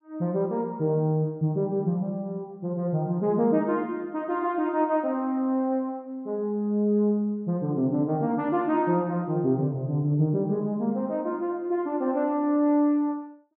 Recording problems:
none

